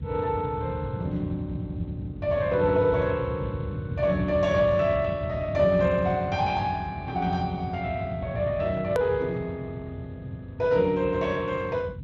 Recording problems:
codec artefacts; Speex, log-spectral distance 2 dB, nothing above 13.1 kHz
rumble; below 160 Hz, SNR 9 dB
hard cut with a click; at 9 s

